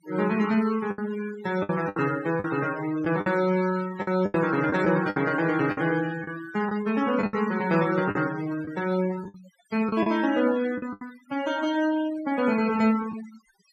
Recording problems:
denoising artefacts; signal-to-artefact ratio 14 dB
lost packets; 8% of the sound replaced, filled with the last packet

